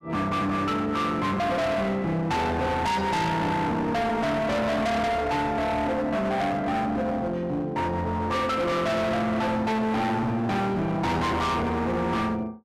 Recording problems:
distorted audio; hard clipping, uneven, signal-to-distortion ratio 5 dB

